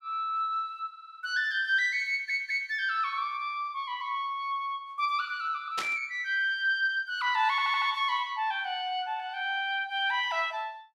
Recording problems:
stutter; at 1 s, at 2 s and at 7.5 s
burst of static; at 6 s; peak -1 dB vs average level

